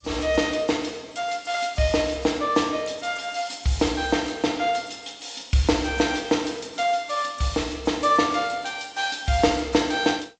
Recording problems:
codec artefacts; G.722, then AAC, log-spectral distance 6 dB, nothing above 7.6 kHz

